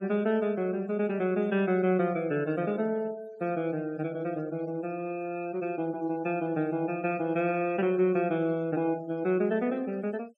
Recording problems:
noise reduction artefacts; signal-to-artefact ratio 25 dB

